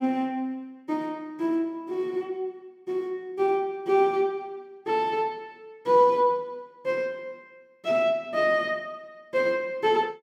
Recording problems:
none

